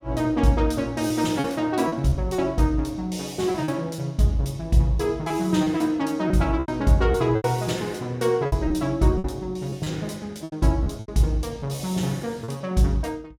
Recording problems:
packet loss; 7% of the sound replaced, filled with repeated pitch periods

